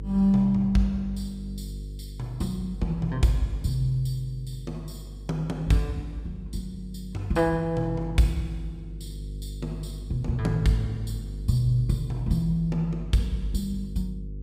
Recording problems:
hum; 50 Hz, harmonics up to 450 Hz, SNR 11 dB

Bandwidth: 15.5 kHz